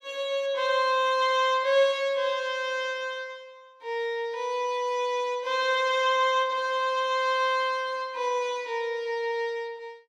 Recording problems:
none

